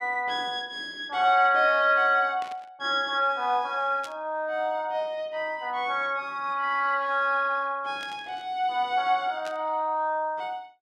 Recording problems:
burst of static; 4 times, first at 2.5 s; peak -12 dB vs average level

